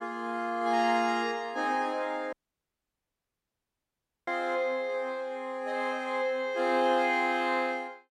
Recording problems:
audio cutting out; at 2.5 s for 2 s

